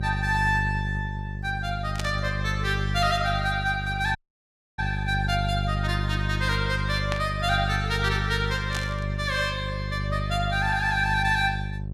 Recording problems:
hum; 50 Hz, harmonics up to 400 Hz, SNR 3 dB
static burst; at 2 s, at 7 s and at 8.5 s; peak -1 dB vs average level
audio cutting out; at 4 s for 0.5 s

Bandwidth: 14.5 kHz